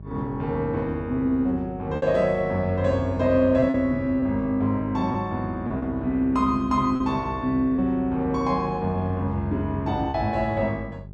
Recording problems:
hum; 50 Hz, harmonics up to 600 Hz, SNR 16 dB
lost packets; 3% of the sound replaced, filled with repeated pitch periods

